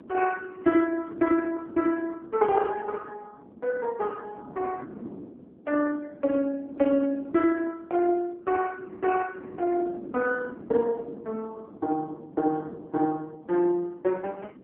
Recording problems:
phone line; 190 Hz to 3.4 kHz, AMR-NB
wind on the microphone; below 390 Hz, SNR 17 dB

